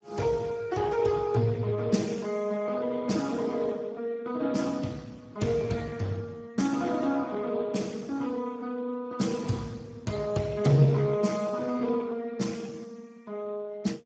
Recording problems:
codec artefacts; Speex, then Speex, log-spectral distance 4 dB, nothing above 7.6 kHz

